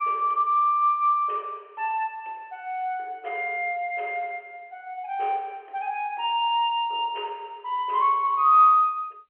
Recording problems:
phone line; 340 Hz to 3.3 kHz, G.711

